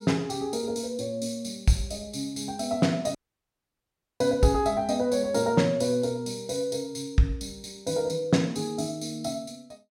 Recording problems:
audio cutting out; at 3 s for 1 s

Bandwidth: 16.5 kHz